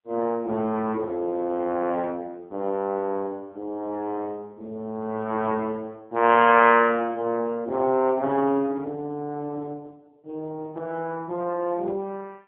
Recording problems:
telephone audio; 280 Hz to 3.3 kHz, AMR-NB

